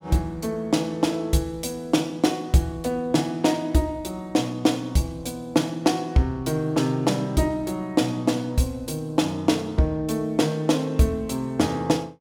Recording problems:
none

